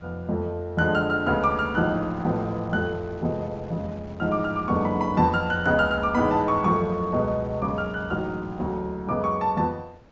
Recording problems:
low-pass filter; nothing above 7.4 kHz
wind on the microphone; below 770 Hz, SNR 21 dB

